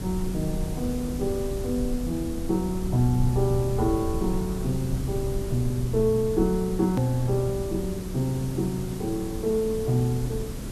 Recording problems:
background hiss; SNR 11 dB
rumble; below 96 Hz, SNR 9 dB
hard cut with a click; at 7 s

